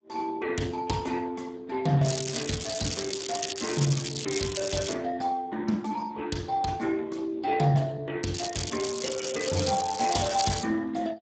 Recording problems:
codec artefacts; Speex, log-spectral distance 9 dB, nothing above 7.6 kHz
crackling; from 2 to 5 s and from 8.5 to 11 s; loose cable, SNR 4 dB

